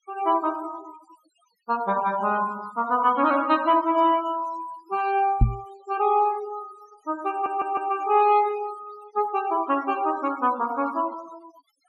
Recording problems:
noise reduction artefacts; signal-to-artefact ratio 19 dB
microphone bump; at 5.5 s; peak +8 dB vs average level
audio stuttering; at 7.5 s

